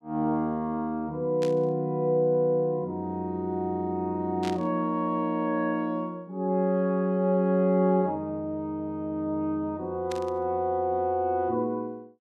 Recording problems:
static burst; at 1.5 s, at 4.5 s and at 10 s; peak -7 dB vs average level

